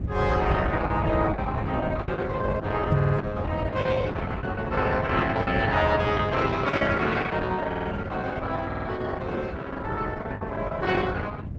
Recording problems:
codec artefacts; Opus, log-spectral distance 3 dB, nothing above 7.8 kHz
rumble; below 160 Hz, SNR 4 dB
packet loss; 16% of the sound replaced, filled with the last packet
microphone bump; at 3 s; peak +6 dB vs average level
audio stuttering; at 3 s, at 7.5 s and at 8.5 s

